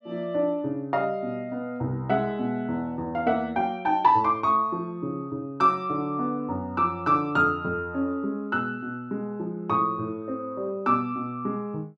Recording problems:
none

